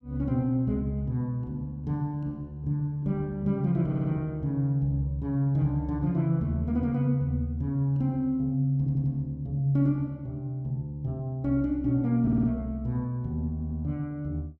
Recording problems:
stutter; 4 times, first at 4 s

